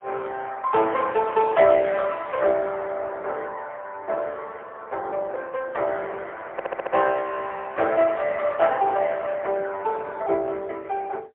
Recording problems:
phone line; 340 Hz to 3.4 kHz, AMR-NB, then MP3
audio stuttering; at 6.5 s

